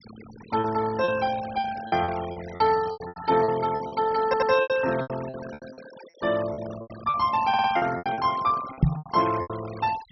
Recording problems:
treble missing; nothing above 5.9 kHz
noise reduction artefacts; signal-to-artefact ratio 16 dB
lost packets; 15% of the sound replaced, filled with repeated pitch periods
stutter; at 4.5 s and at 7.5 s
microphone bump; at 9 s; peak +9 dB vs average level

